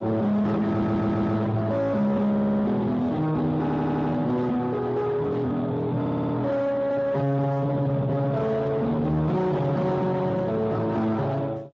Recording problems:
lossy compression; Speex, log-spectral distance 3 dB
distorted audio; soft clipping, signal-to-distortion ratio 5 dB
audio stuttering; 4 times, first at 0.5 s

